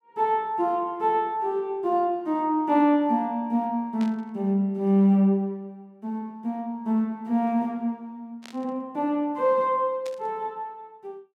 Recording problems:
static burst; at 4 s, at 8.5 s and at 10 s; peak -13 dB vs average level

